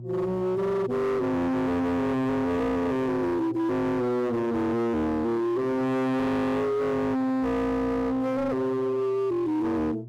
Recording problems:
distorted audio; hard clipping, signal-to-distortion ratio 7 dB
hum; 60 Hz, harmonics up to 900 Hz, SNR 17 dB

